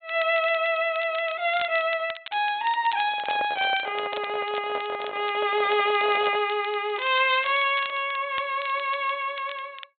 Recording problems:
treble missing; nothing above 4 kHz
crackling; vinyl, SNR 17 dB
microphone handling noise; from 3 to 6.5 s; peak -5 dB vs average level

